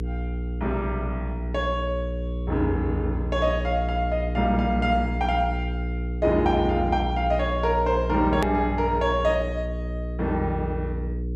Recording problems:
electrical hum; 60 Hz, harmonics up to 480 Hz, SNR 4 dB
hard cut with a click; at 8.5 s

